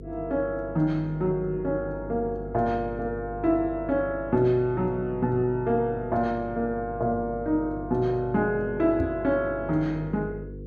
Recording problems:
electrical hum; 50 Hz, harmonics up to 500 Hz, SNR 13 dB
knock on the microphone; at 9 s; peak +1 dB vs average level

